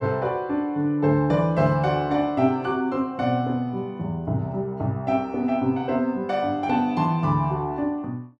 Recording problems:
none

